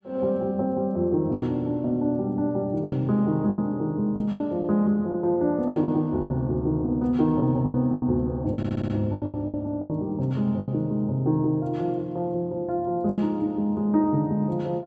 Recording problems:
packet loss; 9% of the sound replaced, filled with the last packet
audio stuttering; at 8.5 s

